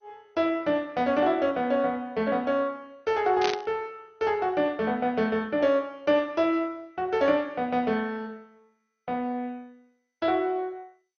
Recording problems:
codec artefacts; MP2, then MP2, log-spectral distance 2 dB, nothing above 6 kHz
burst of static; at 3.5 s; peak +1 dB vs average level

